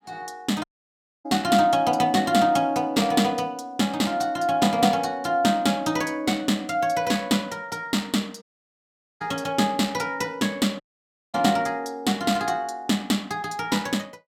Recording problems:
audio cutting out; at 0.5 s for 0.5 s, at 8.5 s for 1 s and at 11 s for 0.5 s

